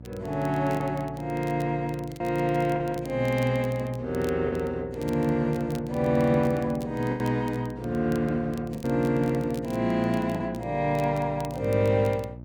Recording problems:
electrical hum; 60 Hz, harmonics up to 660 Hz, SNR 16 dB
crackling; vinyl, SNR 24 dB
lost packets; 4% of the sound replaced, filled with the last packet

